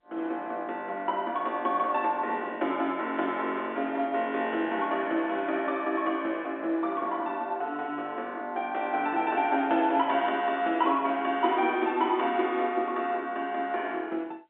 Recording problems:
telephone audio; 240 Hz to 3.6 kHz, G.711

